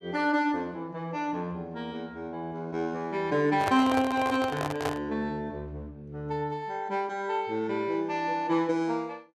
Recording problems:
handling noise; from 3.5 to 5 s; peak +2 dB vs average level

